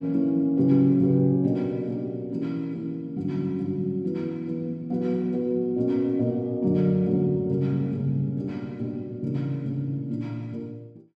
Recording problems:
none

